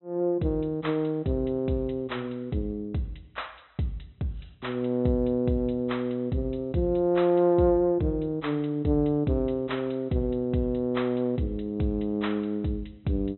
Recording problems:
treble missing; nothing above 4 kHz

